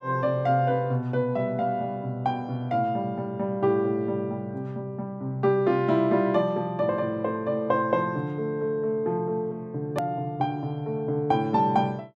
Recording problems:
hard cut with a click; at 10 s

